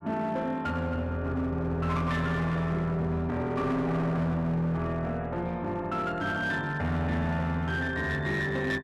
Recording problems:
distorted audio; hard clipping, signal-to-distortion ratio 12 dB

